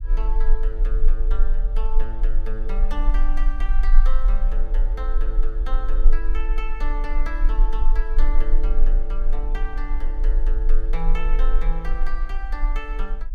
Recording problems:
rumble; below 32 Hz, strongest tone 20 Hz, SNR -11 dB

